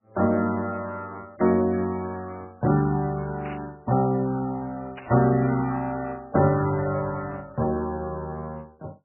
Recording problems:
codec artefacts; MP3, log-spectral distance 2 dB
static burst; at 3.5 s and at 5 s; peak -12 dB vs average level

